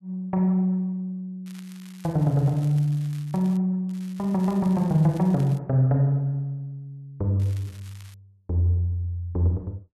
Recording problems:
crackling; from 1.5 to 3.5 s, from 4 to 5.5 s and at 7.5 s; loose cable, SNR 26 dB

